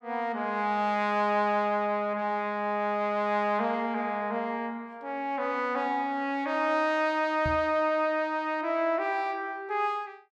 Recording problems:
microphone thump; at 7.5 s; peak -2 dB vs average level

